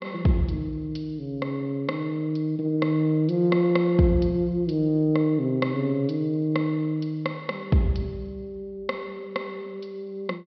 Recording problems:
treble missing; nothing above 5.5 kHz

